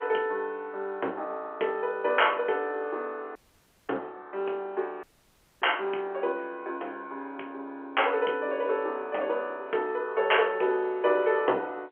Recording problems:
telephone audio; 280 Hz to 3.3 kHz, G.711
dropout; at 3.5 s for 0.5 s and at 5 s for 0.5 s

